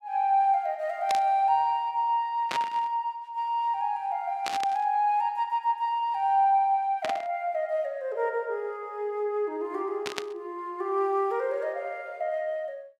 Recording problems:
burst of static; 5 times, first at 1 s; peak 0 dB vs average level

